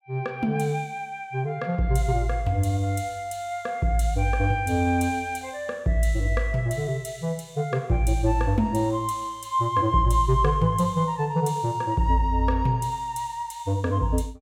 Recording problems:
none

